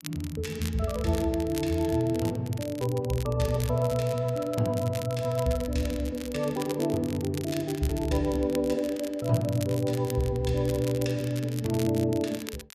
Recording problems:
crackling; vinyl, SNR 15 dB

